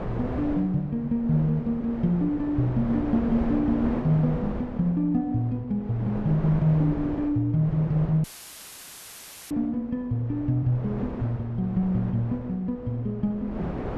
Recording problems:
wind on the microphone; below 530 Hz, SNR 10 dB
audio cutting out; at 8 s for 1.5 s; filled with static

